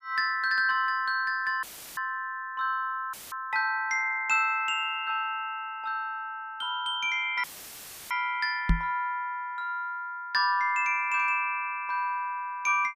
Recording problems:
dropout; at 1.5 s, at 3 s and at 7.5 s for 0.5 s; filled with static
knock on the microphone; at 8.5 s; peak +7 dB vs average level

